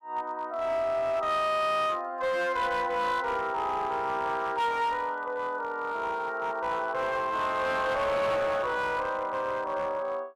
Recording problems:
distortion; hard clipping, uneven, signal-to-distortion ratio 11 dB

